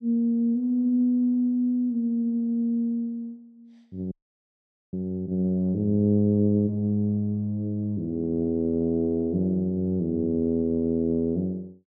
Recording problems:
frozen audio; at 4 s for 1 s

